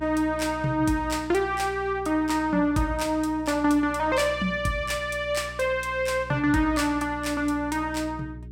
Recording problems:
hum; 60 Hz, harmonics up to 420 Hz, SNR 17 dB

